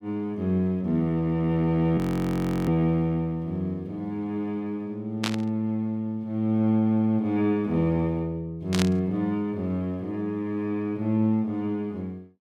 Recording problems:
frozen audio; at 2 s for 0.5 s
burst of static; at 5 s and at 8.5 s; peak +2 dB vs average level

